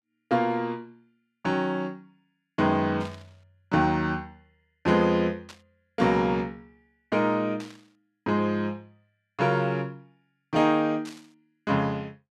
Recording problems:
burst of static; 4 times, first at 3 s; peak -13 dB vs average level

